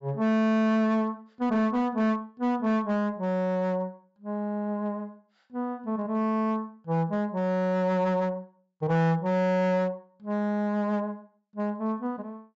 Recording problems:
treble missing; nothing above 8 kHz
distorted audio; hard clipping, signal-to-distortion ratio 11 dB

